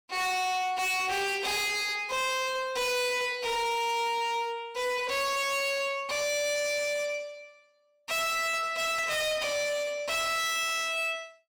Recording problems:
distortion; hard clipping, signal-to-distortion ratio 7 dB

